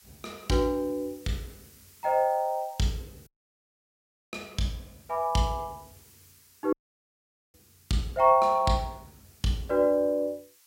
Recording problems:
background hiss; slope +4 dB per octave, SNR 27 dB
audio cutting out; at 3.5 s for 1 s and at 6.5 s for 1 s

